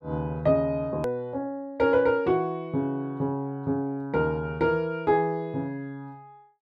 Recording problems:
hard cut with a click; at 1 s

